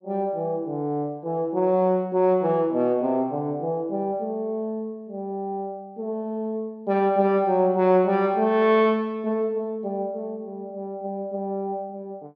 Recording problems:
none

